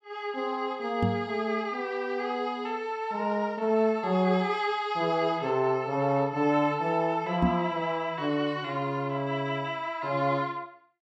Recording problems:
microphone bump; at 1 s and at 7.5 s; peak +5 dB vs average level

